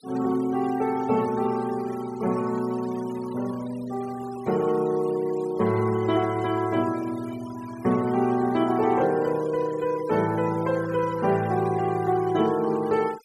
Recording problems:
denoising artefacts; signal-to-artefact ratio 19 dB

